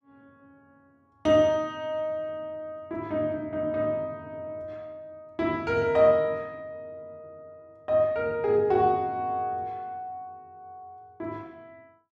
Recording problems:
none

